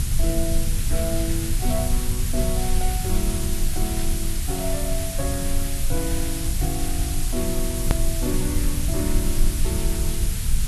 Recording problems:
lossy compression; Vorbis, then Vorbis, log-spectral distance 7 dB
hiss; slope +1 dB per octave, SNR 0 dB
rumble; below 66 Hz, strongest tone 20 Hz, SNR -3 dB
click at an edit; at 8 s

